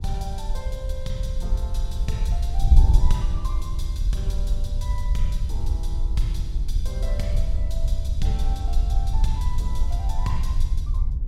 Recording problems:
wind noise; below 62 Hz, SNR -10 dB

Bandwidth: 16.5 kHz